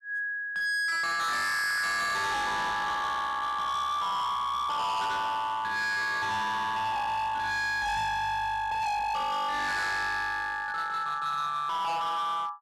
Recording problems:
distortion; hard clipping, uneven, signal-to-distortion ratio 6 dB

